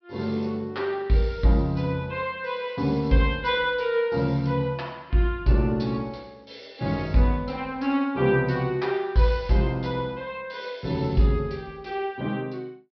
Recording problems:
low-pass filter; nothing above 5.5 kHz

